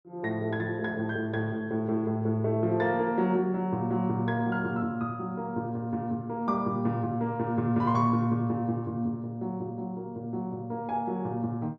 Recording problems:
none

